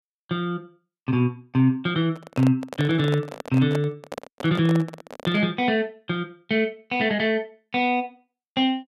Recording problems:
microphone handling noise; from 2 to 5.5 s; peak -4 dB vs average level

